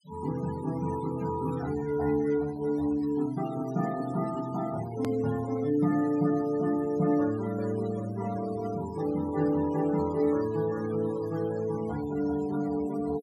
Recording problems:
noise reduction artefacts; signal-to-artefact ratio 17 dB
click at an edit; at 5 s

